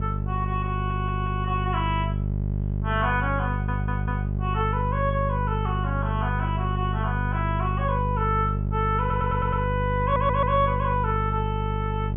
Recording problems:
low-pass filter; nothing above 3.3 kHz
electrical hum; 50 Hz, harmonics up to 600 Hz, SNR 0 dB
audio stuttering; 4 times, first at 0.5 s

